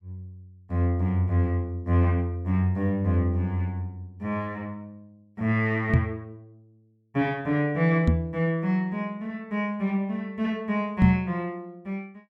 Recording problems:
microphone thump; at 6 s, at 8 s and at 11 s; peak +9 dB vs average level

